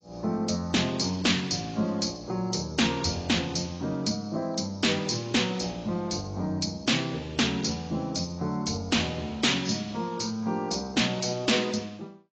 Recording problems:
lossy codec; AAC, log-spectral distance 6 dB
distorted audio; soft clipping, signal-to-distortion ratio 11 dB

